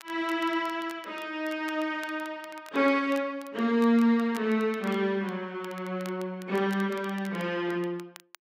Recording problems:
crackle; vinyl, SNR 22 dB

